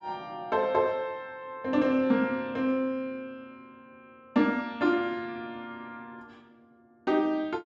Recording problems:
none

